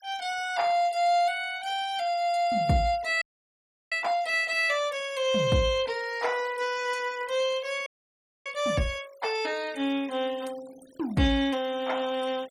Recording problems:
noise reduction artefacts; signal-to-artefact ratio 22 dB
frozen audio; at 3 s for 0.5 s and at 8 s for 0.5 s

